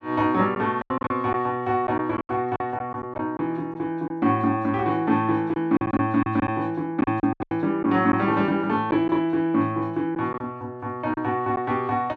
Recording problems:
lost packets; 8% of the sound replaced, filled with silence

